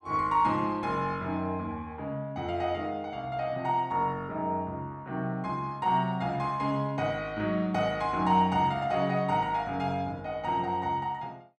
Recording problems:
none

